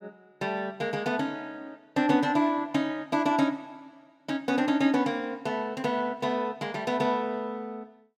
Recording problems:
none

